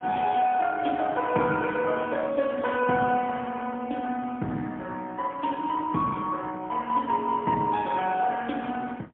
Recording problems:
telephone audio; 170 Hz to 3.4 kHz, AMR-NB, then MP3

